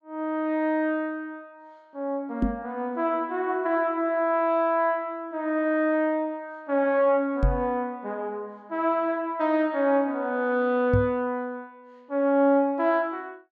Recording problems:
microphone thump; at 2.5 s, at 7.5 s and at 11 s; peak +5 dB vs average level

